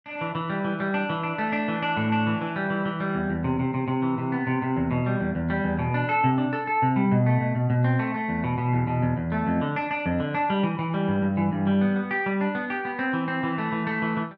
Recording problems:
none

